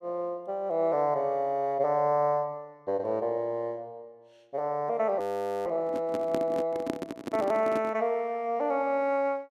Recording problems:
audio freezing; at 5 s
handling noise; from 6 to 8 s; peak +1 dB vs average level

